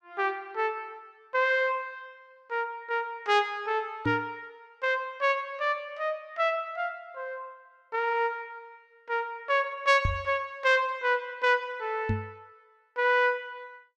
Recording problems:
knock on the microphone; at 4 s, at 10 s and at 12 s; peak +3 dB vs average level

